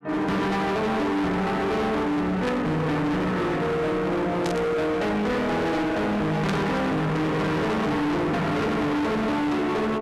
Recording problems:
distortion; hard clipping, signal-to-distortion ratio 6 dB
burst of static; at 2.5 s, at 4.5 s and at 6.5 s; peak -5 dB vs average level

